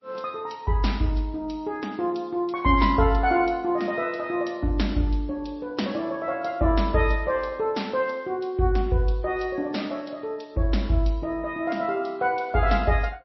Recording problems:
codec artefacts; MP3, log-spectral distance 2 dB, nothing above 5.7 kHz

